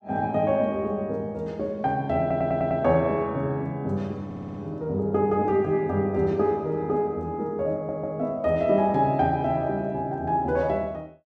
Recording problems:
audio stuttering; at 2 s, at 4.5 s and at 7.5 s

